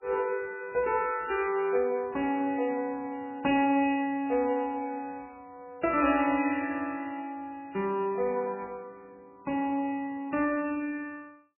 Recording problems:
codec artefacts; MP3, log-spectral distance 2 dB, nothing above 2.4 kHz

